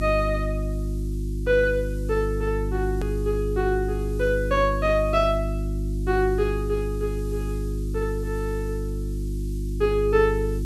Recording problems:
hum; 50 Hz, harmonics up to 350 Hz, SNR 3 dB
background hiss; slope +5 dB per octave, SNR 25 dB
click at an edit; at 3 s

